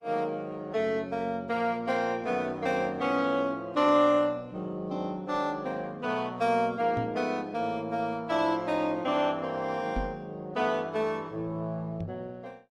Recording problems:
codec artefacts; Opus, log-spectral distance 2 dB
knock on the microphone; at 7 s, at 10 s and at 12 s; peak -2 dB vs average level

